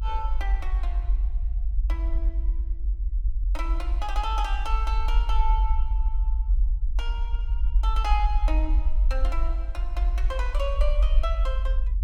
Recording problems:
low-frequency rumble; below 48 Hz, SNR -7 dB

